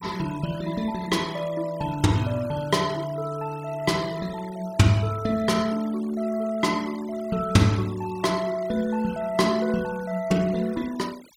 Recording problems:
denoising artefacts; signal-to-artefact ratio 20 dB

